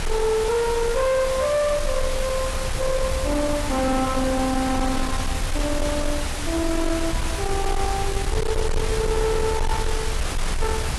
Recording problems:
lossy compression; AAC, log-spectral distance 6 dB, nothing above 12 kHz
distorted audio; soft clipping, signal-to-distortion ratio 6 dB
hiss; slope -4 dB per octave, SNR 2 dB
rumble; below 1.4 kHz, SNR 1 dB

